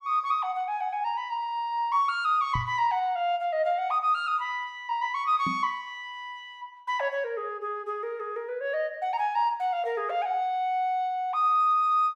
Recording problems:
microphone bump; at 2.5 s and at 5.5 s; peak -1 dB vs average level

